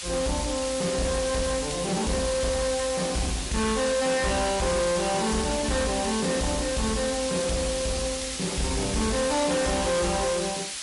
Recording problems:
codec artefacts; MP3, log-spectral distance 12 dB, nothing above 11 kHz
distorted audio; soft clipping, signal-to-distortion ratio 10 dB
hiss; slope +4 dB per octave, SNR 5 dB

